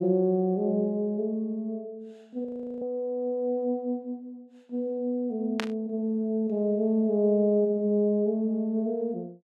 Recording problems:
audio freezing; at 2.5 s
burst of static; at 5.5 s; peak +1 dB vs average level

